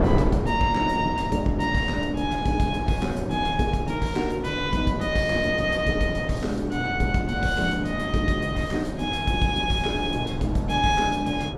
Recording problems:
wind on the microphone; below 460 Hz, SNR 6 dB

